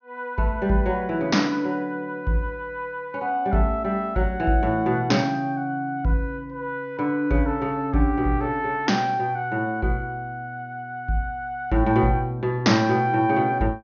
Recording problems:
low-pass filter; nothing above 6.6 kHz

